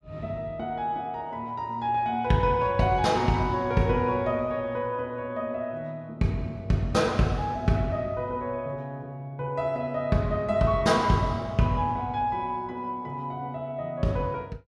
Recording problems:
none

